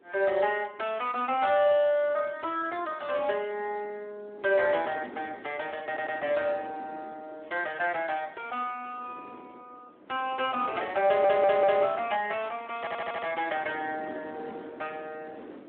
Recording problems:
telephone audio; 220 Hz to 3.4 kHz, Speex
wind noise; below 600 Hz, SNR 19 dB
stutter; at 6 s, at 11 s and at 13 s

